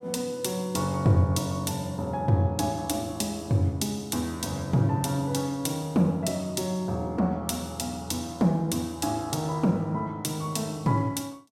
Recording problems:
none

